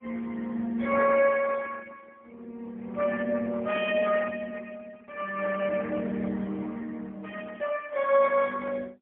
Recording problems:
telephone audio; 240 Hz to 2.3 kHz, AMR-NB, then MP3

